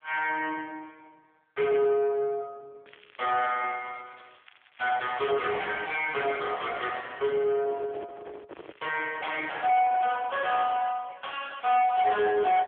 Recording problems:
telephone audio; 260 Hz to 3.4 kHz, AMR-NB
distortion; soft clipping, signal-to-distortion ratio 7 dB
crackling; from 3 to 6.5 s and from 8.5 to 10 s; loose cable, SNR 28 dB
handling noise; from 7.5 to 11 s; peak -11 dB vs average level

